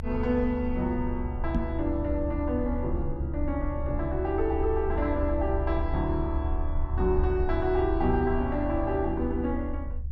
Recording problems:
rumble; below 72 Hz, strongest tone 22 Hz, SNR 4 dB
microphone bump; at 1.5 s; peak +4 dB vs average level

